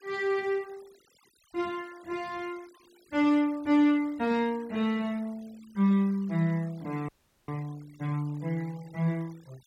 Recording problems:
denoising artefacts; signal-to-artefact ratio 26 dB
frozen audio; at 7 s

